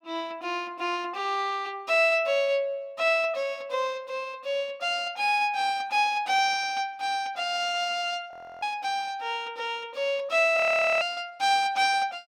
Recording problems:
frozen audio; at 8.5 s and at 11 s

